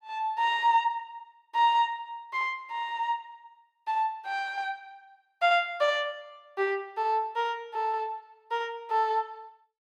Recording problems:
none

